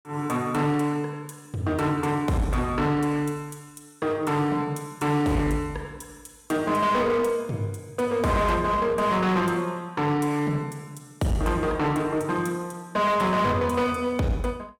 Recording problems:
distortion; hard clipping, uneven, signal-to-distortion ratio 10 dB

